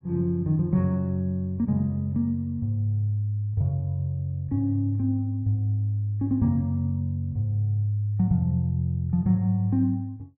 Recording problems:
none

